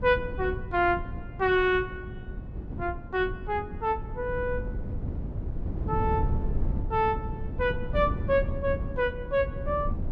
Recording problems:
wind on the microphone; below 140 Hz, SNR 6 dB

